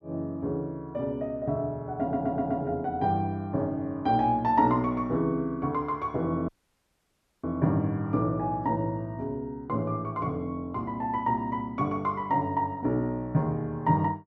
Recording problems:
stutter; at 2 s
audio cutting out; at 6.5 s for 1 s

